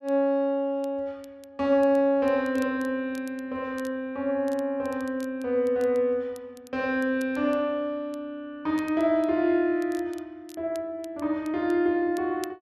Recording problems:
crackling; vinyl, SNR 27 dB

